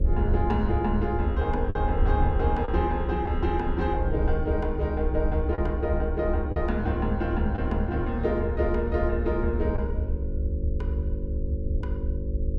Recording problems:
hum; 50 Hz, harmonics up to 550 Hz, SNR 9 dB
low-frequency rumble; below 68 Hz, SNR 3 dB
wind on the microphone; below 76 Hz, SNR 6 dB
lost packets; 1.8% of the sound replaced, filled with the last packet

